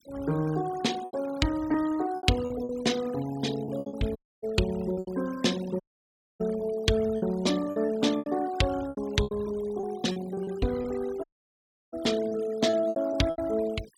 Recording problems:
noise reduction artefacts; signal-to-artefact ratio 16 dB
packet loss; 12% of the sound replaced, filled with repeated pitch periods
audio cutting out; at 4 s, at 6 s for 0.5 s and at 11 s for 0.5 s

